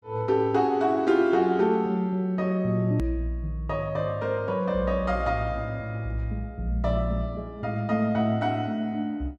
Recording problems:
hard cut with a click; at 3 s

